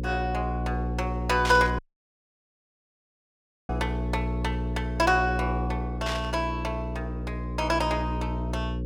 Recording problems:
hum; 60 Hz, harmonics up to 540 Hz, SNR 3 dB
static burst; at 1.5 s and at 6 s; peak 0 dB vs average level
audio cutting out; at 2 s for 2 s

